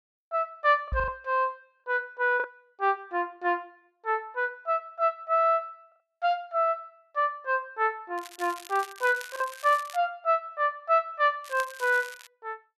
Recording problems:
packet loss; 2% of the sound replaced, filled with the last packet
knock on the microphone; at 1 s; peak -1 dB vs average level
crackling; from 8 to 10 s and at 11 s; loose cable, SNR 17 dB

